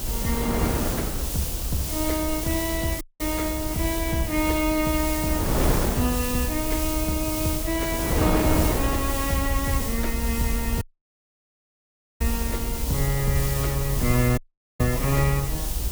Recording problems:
lossy codec; AAC, log-spectral distance 2 dB
background hiss; SNR 3 dB
low-frequency rumble; below 66 Hz, SNR 5 dB
wind noise; below 660 Hz, SNR 5 dB
dropout; at 3 s, at 11 s for 1.5 s and at 14 s

